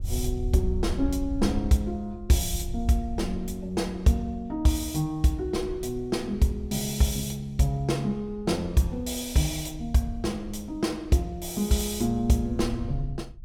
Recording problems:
wind on the microphone; below 74 Hz, SNR 11 dB

